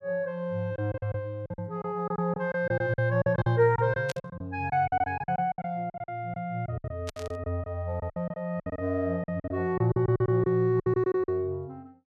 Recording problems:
packet loss; 16% of the sound replaced, filled with silence
burst of static; at 4 s and at 7 s; peak -4 dB vs average level

